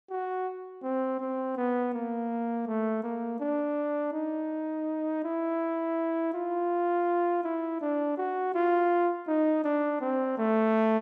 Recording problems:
none

